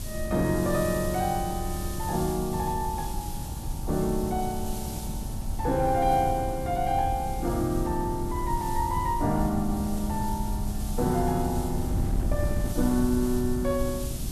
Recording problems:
background hiss; SNR 13 dB
wind on the microphone; below 110 Hz, SNR 6 dB

